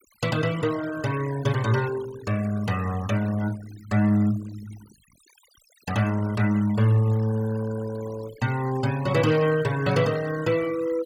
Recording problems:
noise reduction artefacts; signal-to-artefact ratio 17 dB

